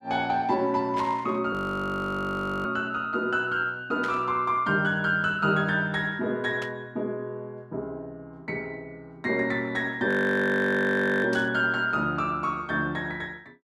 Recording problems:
static burst; 4 times, first at 1 s; peak -8 dB vs average level
frozen audio; at 1.5 s for 1 s and at 10 s for 1 s

